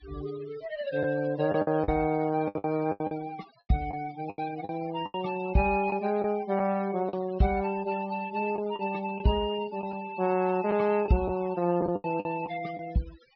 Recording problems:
low-pass filter; nothing above 5.5 kHz
denoising artefacts; signal-to-artefact ratio 19 dB
lost packets; 8% of the sound replaced, filled with the last packet

